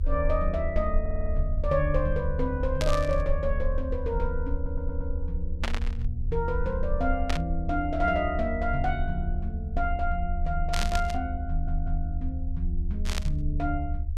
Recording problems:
low-frequency rumble; below 74 Hz, strongest tone 26 Hz, SNR 1 dB
audio stuttering; at 1 s, at 4.5 s and at 11 s
burst of static; 5 times, first at 3 s; peak +4 dB vs average level

